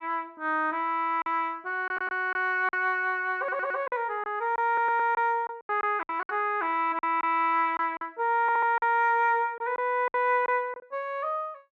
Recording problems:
packet loss; 8% of the sound replaced, filled with silence
audio stuttering; 4 times, first at 2 s

